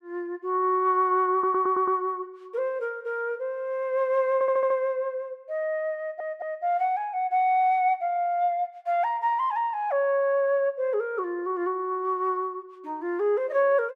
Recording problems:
audio stuttering; at 1.5 s, at 4.5 s and at 6 s

